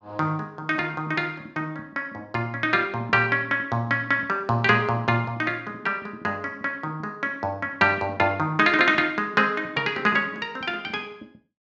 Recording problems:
none

